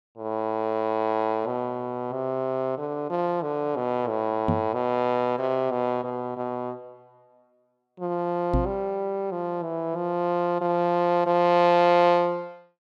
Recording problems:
microphone bump; at 4.5 s and at 8.5 s; peak +4 dB vs average level

